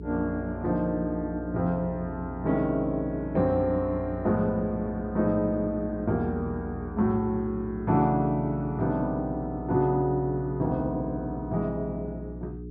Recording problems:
treble cut off; nothing above 5.5 kHz
electrical hum; 60 Hz, harmonics up to 420 Hz, SNR 10 dB

